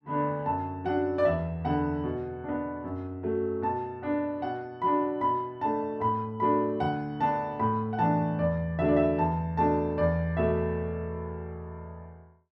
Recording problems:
none

